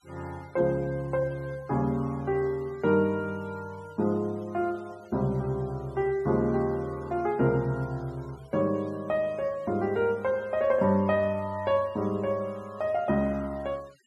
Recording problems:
noise reduction artefacts; signal-to-artefact ratio 26 dB

